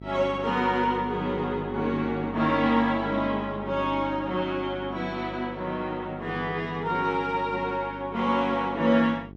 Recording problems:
mains hum; 50 Hz, harmonics up to 800 Hz, SNR 14 dB

